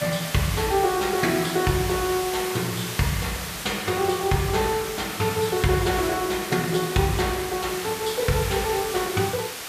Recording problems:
background hiss; slope 0 dB per octave, SNR 7 dB

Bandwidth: 14.5 kHz